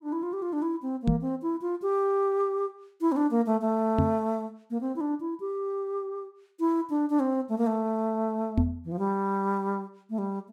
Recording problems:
knock on the microphone; at 1 s, at 4 s and at 8.5 s; peak +8 dB vs average level

